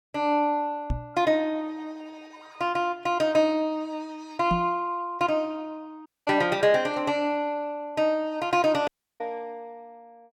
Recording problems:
microphone bump; at 1 s and at 4.5 s; peak +1 dB vs average level
audio cutting out; at 6 s and at 9 s

